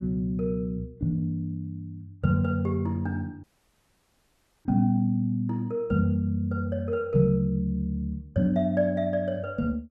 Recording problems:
audio cutting out; at 3.5 s for 1 s

